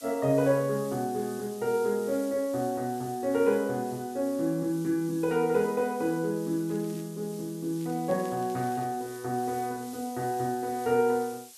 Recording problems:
background hiss; SNR 18 dB
crackle; at 6.5 s and from 8 to 9 s; loose cable, SNR 26 dB

